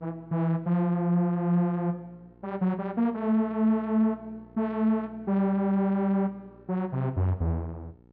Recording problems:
mains hum; 60 Hz, harmonics up to 960 Hz, SNR 27 dB

